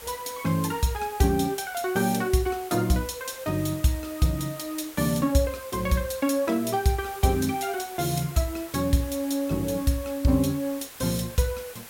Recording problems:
background hiss; SNR 16 dB

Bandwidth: 16.5 kHz